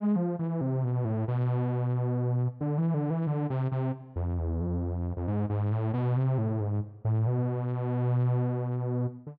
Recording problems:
none

